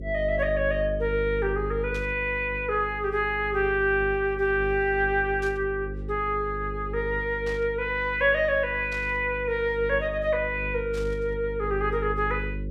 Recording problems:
hum; 50 Hz, harmonics up to 550 Hz, SNR 10 dB
static burst; 5 times, first at 2 s; peak -13 dB vs average level

